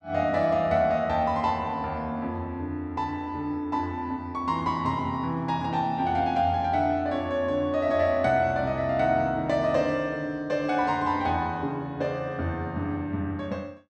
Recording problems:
none

